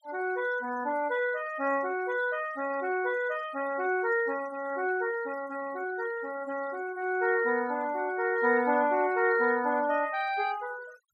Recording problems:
denoising artefacts; signal-to-artefact ratio 21 dB

